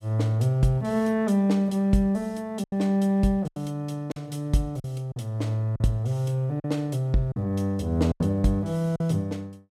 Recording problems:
packet loss; 5% of the sound replaced, filled with silence

